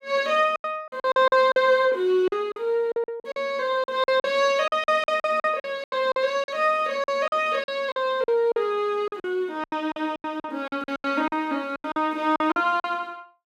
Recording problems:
packet loss; 15% of the sound replaced, filled with silence

